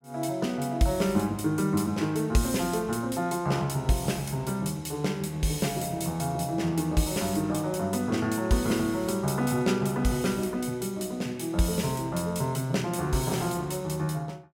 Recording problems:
none

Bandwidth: 16.5 kHz